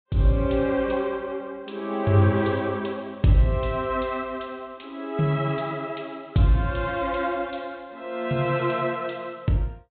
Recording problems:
treble missing; nothing above 4 kHz

